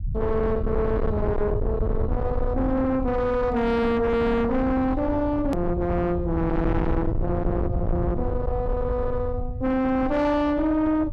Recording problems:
distorted audio; soft clipping, signal-to-distortion ratio 8 dB
rumble; below 130 Hz, SNR 5 dB
click at an edit; at 5.5 s

